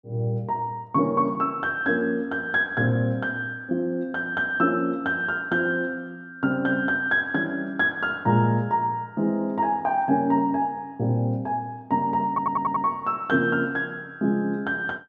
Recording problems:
stutter; at 12 s

